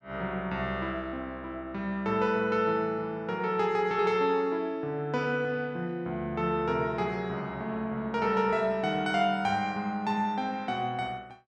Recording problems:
none

